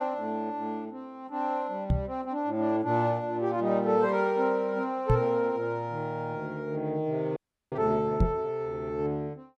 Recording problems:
microphone thump; at 2 s, at 5 s and at 8 s; peak +8 dB vs average level
frozen audio; at 7.5 s

